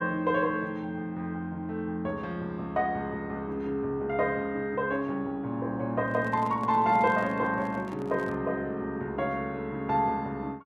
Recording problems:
microphone handling noise; from 6 to 8.5 s; peak -10 dB vs average level

